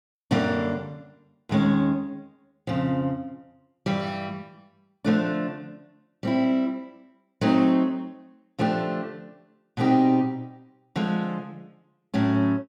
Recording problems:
none

